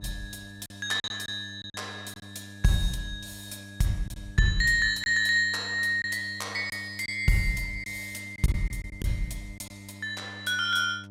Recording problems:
electrical hum; 50 Hz, harmonics up to 1 kHz, SNR 19 dB
lost packets; 5% of the sound replaced, filled with silence

